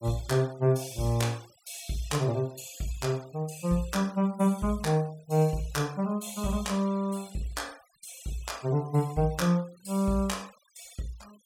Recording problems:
noise reduction artefacts; signal-to-artefact ratio 22 dB

